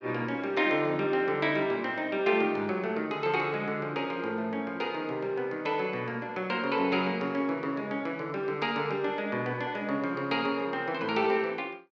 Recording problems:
none

